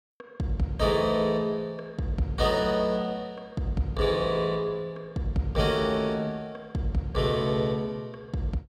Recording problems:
none

